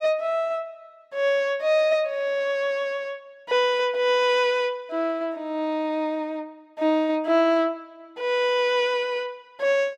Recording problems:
none

